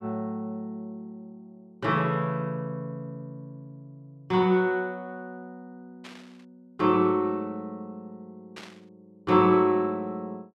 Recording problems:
burst of static; at 6 s and at 8.5 s; peak -12 dB vs average level

